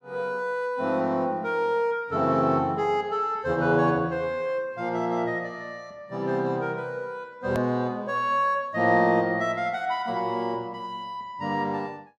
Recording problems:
click at an edit; at 7.5 s

